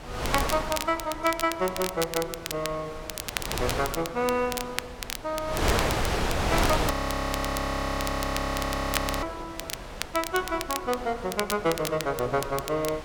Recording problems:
wind on the microphone; below 1.7 kHz, SNR 2 dB
crackle; vinyl, SNR 6 dB
audio freezing; at 7 s for 2.5 s

